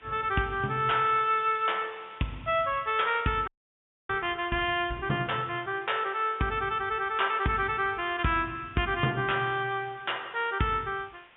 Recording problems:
treble cut off; nothing above 3.5 kHz
hiss; SNR 27 dB
crackling; from 0.5 to 3.5 s; loose cable, SNR 27 dB
frozen audio; at 3.5 s for 0.5 s

